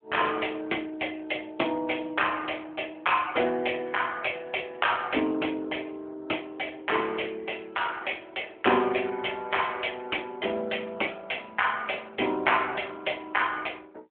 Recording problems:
phone line; 260 Hz to 3.4 kHz, AMR-NB

